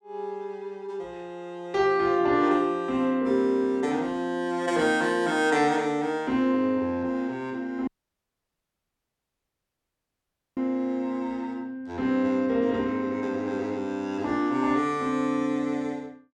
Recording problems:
dropout; at 8 s for 2.5 s

